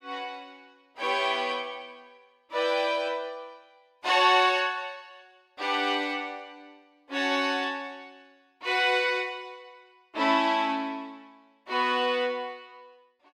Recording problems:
none

